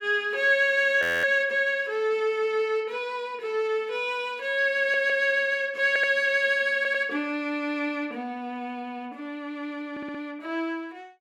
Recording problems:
frozen audio; at 1 s
stutter; 4 times, first at 5 s

